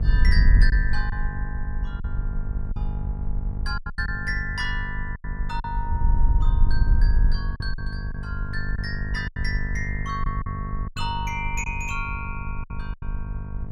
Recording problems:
electrical hum; 50 Hz, harmonics up to 900 Hz, SNR 3 dB
wind on the microphone; below 56 Hz, SNR -4 dB
packet loss; 7% of the sound replaced, filled with silence

